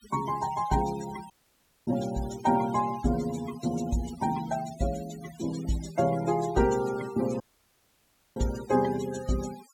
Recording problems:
noise reduction artefacts; signal-to-artefact ratio 15 dB
dropout; at 1.5 s for 0.5 s and at 7.5 s for 1 s

